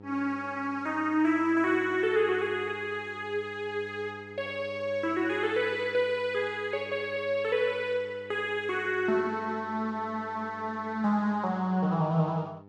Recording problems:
hum; 50 Hz, harmonics up to 1.3 kHz, SNR 20 dB

